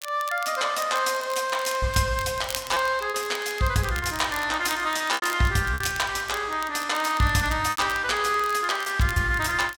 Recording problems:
crackle; vinyl, SNR 15 dB
lost packets; 5% of the sound replaced, filled with repeated pitch periods

